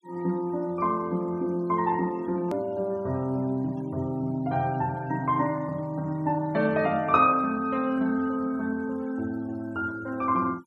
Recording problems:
noise reduction artefacts; signal-to-artefact ratio 27 dB
hard cut with a click; at 2.5 s

